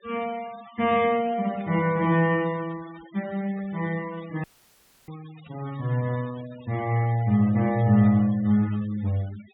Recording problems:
treble missing; nothing above 3.7 kHz
noise reduction artefacts; signal-to-artefact ratio 22 dB
burst of static; at 1.5 s, at 3.5 s and at 5.5 s; peak -24 dB vs average level
dropout; at 4.5 s for 0.5 s

